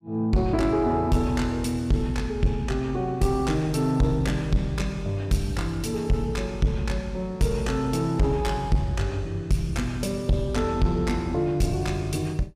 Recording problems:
distortion; soft clipping, signal-to-distortion ratio 11 dB

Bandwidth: 15.5 kHz